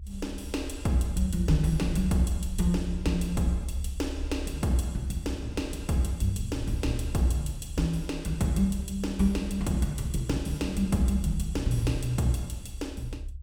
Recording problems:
rumble; below 70 Hz, SNR 9 dB

